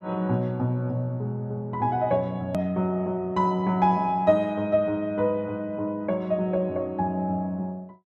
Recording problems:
edit click; at 2.5 s

